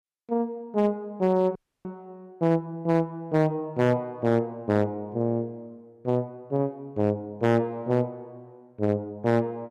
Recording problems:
distorted audio; hard clipping, signal-to-distortion ratio 12 dB
audio cutting out; at 1.5 s

